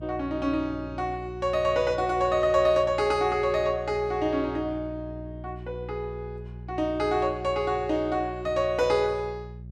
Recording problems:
electrical hum; 60 Hz, harmonics up to 420 Hz, SNR 15 dB

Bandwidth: 13.5 kHz